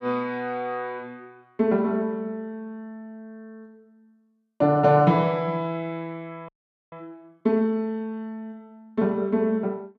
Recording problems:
audio freezing; at 6.5 s

